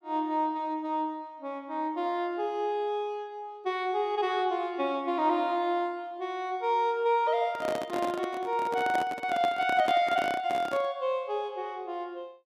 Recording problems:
handling noise; from 7.5 to 11 s; peak 0 dB vs average level

